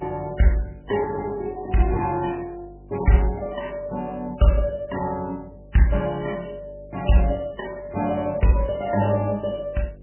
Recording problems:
lossy codec; MP2, then MP3, log-spectral distance 3 dB, nothing above 3 kHz
mains hum; 50 Hz, harmonics up to 600 Hz, SNR 23 dB

